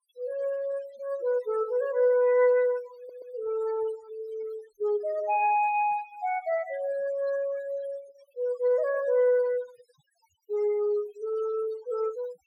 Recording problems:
noise reduction artefacts; signal-to-artefact ratio 19 dB
stutter; at 3 s

